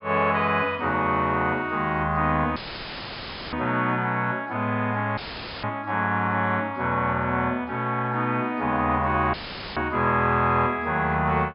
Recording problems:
treble missing; nothing above 5.5 kHz
audio cutting out; at 2.5 s for 1 s, at 5 s and at 9.5 s; filled with static

